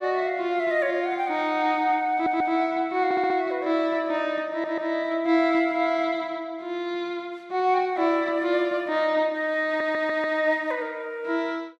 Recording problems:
stutter; 4 times, first at 2 s

